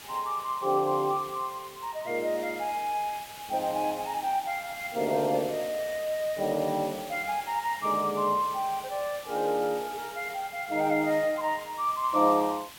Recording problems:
background hiss; SNR 15 dB

